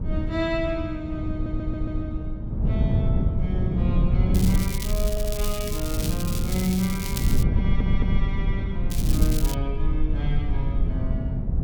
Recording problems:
rumble; below 50 Hz, SNR 2 dB
wind noise; below 160 Hz, SNR -4 dB
audio stuttering; at 1.5 s, at 5 s and at 7.5 s
crackle; from 4.5 to 7.5 s and at 9 s; loose cable, SNR 3 dB

